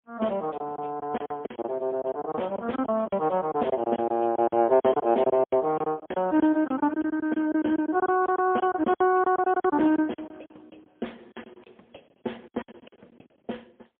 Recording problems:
telephone audio; 240 Hz to 3.4 kHz, AMR-NB, then MP3
packet loss; 15% of the sound replaced, filled with silence

